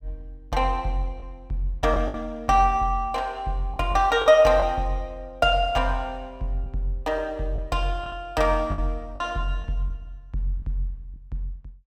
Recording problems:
packet loss; 4% of the sound replaced, filled with the last packet

